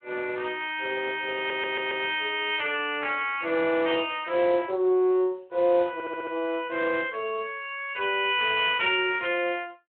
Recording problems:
telephone audio; 280 Hz to 3.2 kHz, Speex
stutter; at 1.5 s and at 6 s

